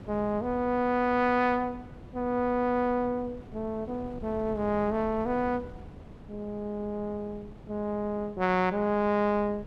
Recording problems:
wind on the microphone; below 320 Hz, SNR 18 dB

